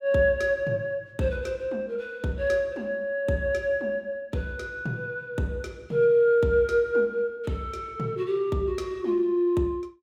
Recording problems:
none

